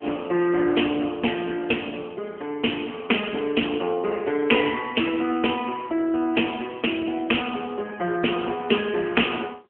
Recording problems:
telephone audio; 260 Hz to 3.3 kHz, AMR-NB

